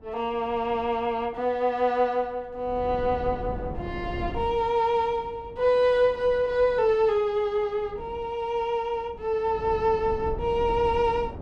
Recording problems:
wind on the microphone; below 290 Hz, SNR 14 dB

